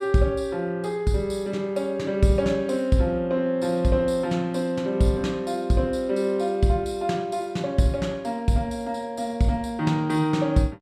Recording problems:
none

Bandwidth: 14.5 kHz